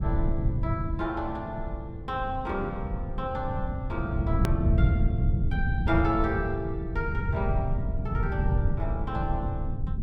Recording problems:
rumble; below 130 Hz, SNR -3 dB
hard cut with a click; at 4.5 s

